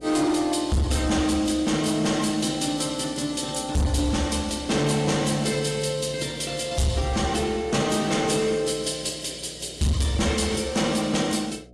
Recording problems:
lossy codec; AAC, log-spectral distance 4 dB
distortion; hard clipping, signal-to-distortion ratio 10 dB
hum; 60 Hz, harmonics up to 720 Hz, SNR 24 dB

